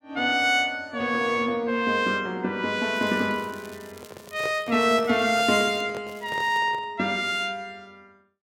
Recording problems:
crackling; from 3 to 6 s and at 6 s; loose cable, SNR 25 dB
handling noise; from 4 to 7 s; peak -7 dB vs average level

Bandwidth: 16.5 kHz